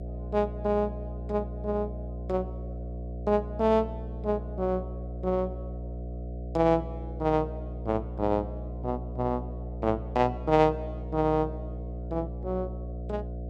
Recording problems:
hum; 60 Hz, harmonics up to 720 Hz, SNR 8 dB

